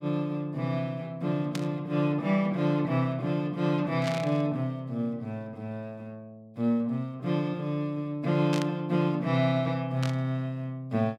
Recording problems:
burst of static; 4 times, first at 1.5 s; peak -3 dB vs average level

